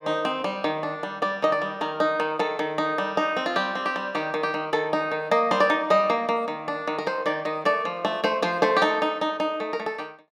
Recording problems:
none

